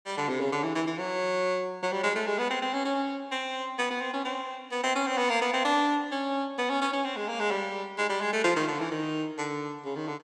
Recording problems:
none

